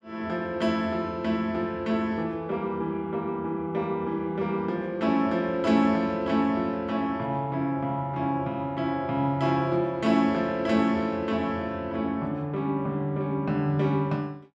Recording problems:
none

